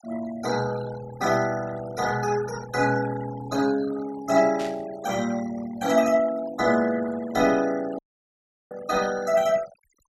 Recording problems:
noise reduction artefacts; signal-to-artefact ratio 16 dB
burst of static; at 4.5 s; peak -10 dB vs average level
audio cutting out; at 8 s for 0.5 s

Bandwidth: 15.5 kHz